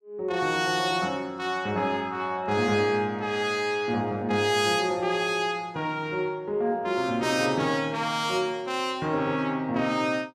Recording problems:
none

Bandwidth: 15.5 kHz